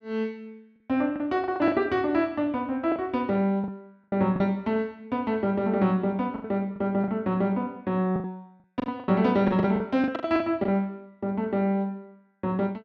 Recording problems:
packet loss; 9% of the sound replaced, filled with the last packet

